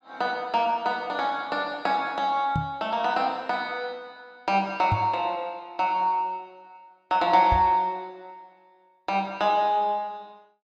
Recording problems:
knock on the microphone; at 2.5 s, at 5 s and at 7.5 s; peak +2 dB vs average level

